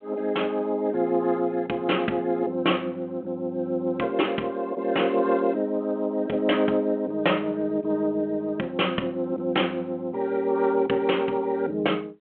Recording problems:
telephone audio; 220 Hz to 3.3 kHz, G.726

